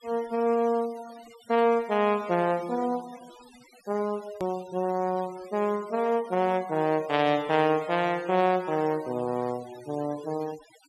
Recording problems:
denoising artefacts; signal-to-artefact ratio 21 dB
hard cut with a click; at 4.5 s

